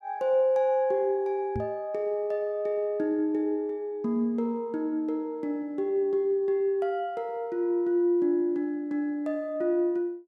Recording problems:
microphone thump; at 1.5 s; peak -2 dB vs average level

